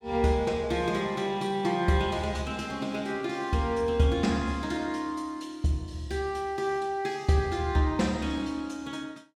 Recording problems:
none

